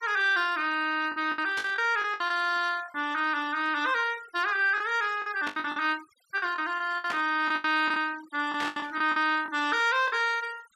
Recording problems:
noise reduction artefacts; signal-to-artefact ratio 20 dB
packet loss; 10% of the sound replaced, filled with the last packet
burst of static; 4 times, first at 1.5 s; peak -4 dB vs average level

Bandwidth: 14.5 kHz